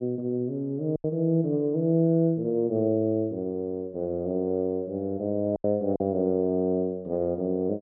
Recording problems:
packet loss; 3% of the sound replaced, filled with silence

